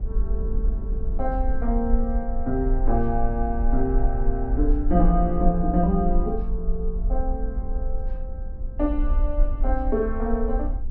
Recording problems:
low-frequency rumble; below 46 Hz, SNR 1 dB
wind on the microphone; below 220 Hz, SNR 17 dB

